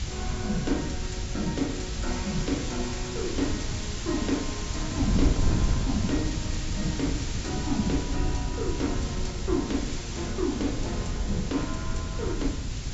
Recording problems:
treble cut off; nothing above 8 kHz
background hiss; slope +2 dB per octave, SNR 6 dB
low-frequency rumble; below 94 Hz, SNR 10 dB
wind on the microphone; below 130 Hz, SNR 1 dB

